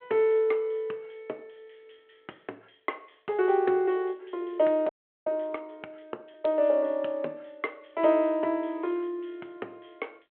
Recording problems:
telephone audio; 280 Hz to 3.2 kHz, G.726
frozen audio; at 5 s

